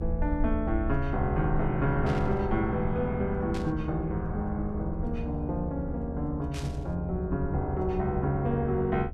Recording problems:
hum; 60 Hz, harmonics up to 720 Hz, SNR 12 dB
rumble; below 76 Hz, SNR 8 dB
static burst; at 2 s, at 3.5 s and at 6.5 s; peak -8 dB vs average level

